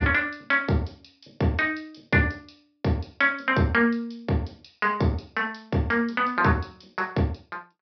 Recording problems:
low-pass filter; nothing above 5.5 kHz

